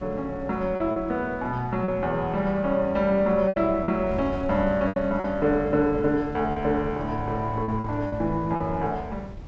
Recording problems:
low-pass filter; nothing above 8 kHz
wind on the microphone; below 140 Hz, SNR 15 dB
lost packets; 6% of the sound replaced, filled with repeated pitch periods

